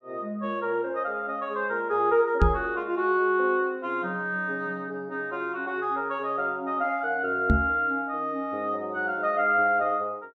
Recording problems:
microphone thump; at 2.5 s and at 7.5 s; peak +7 dB vs average level

